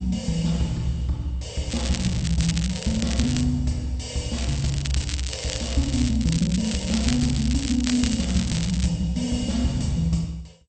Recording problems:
codec artefacts; MP2, log-spectral distance 6 dB, nothing above 8.5 kHz
crackling; from 1.5 to 3.5 s and from 4.5 to 9 s; loose cable, SNR 8 dB

